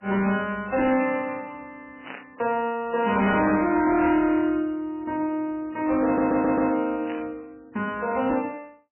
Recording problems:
lossy codec; MP3, log-spectral distance 3 dB, nothing above 2.7 kHz
distortion; hard clipping, signal-to-distortion ratio 12 dB
burst of static; at 2 s, at 3.5 s and at 7 s; peak -10 dB vs average level
stutter; at 6 s

